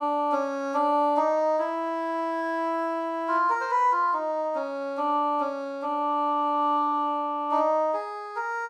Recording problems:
none

